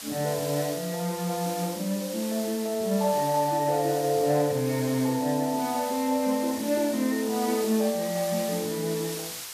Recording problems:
hiss; slope +2 dB per octave, SNR 10 dB

